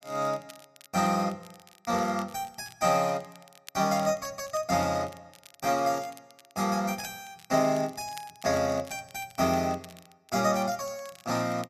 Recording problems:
crackling; vinyl, SNR 23 dB

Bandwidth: 14 kHz